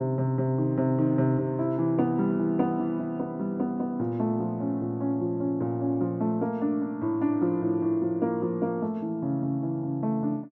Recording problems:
low-pass filter; nothing above 8 kHz

